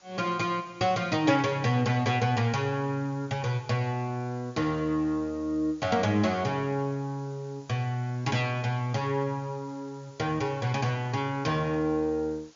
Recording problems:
low-pass filter; nothing above 7.2 kHz
hiss; slope -1 dB per octave, SNR 28 dB

